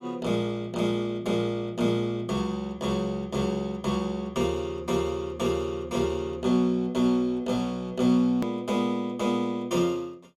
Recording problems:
click at an edit; at 8.5 s

